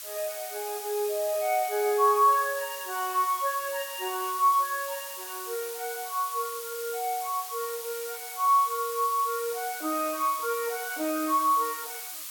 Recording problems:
background hiss; SNR 9 dB

